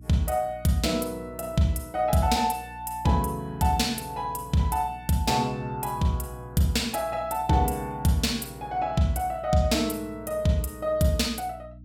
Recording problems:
hum; 60 Hz, harmonics up to 300 Hz, SNR 20 dB

